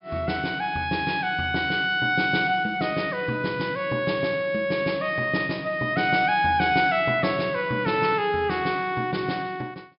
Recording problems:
treble missing; nothing above 5.5 kHz

